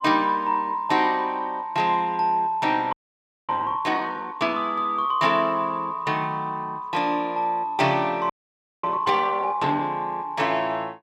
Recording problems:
audio freezing; at 3 s for 0.5 s and at 8.5 s for 0.5 s

